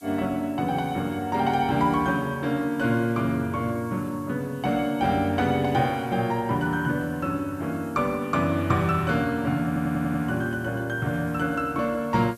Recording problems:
background hiss; slope +2 dB per octave, SNR 27 dB
stutter; at 9.5 s

